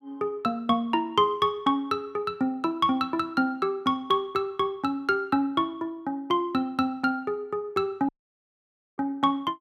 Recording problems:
dropout; at 8 s for 1 s

